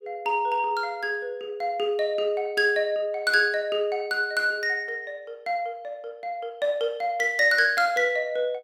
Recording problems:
none

